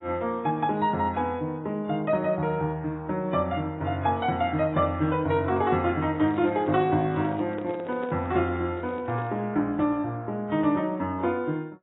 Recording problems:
codec artefacts; AAC, log-spectral distance 2 dB, nothing above 3.5 kHz
microphone handling noise; from 6 to 9.5 s; peak -8 dB vs average level

